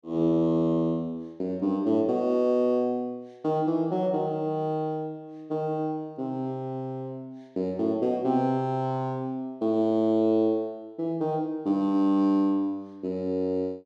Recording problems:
none

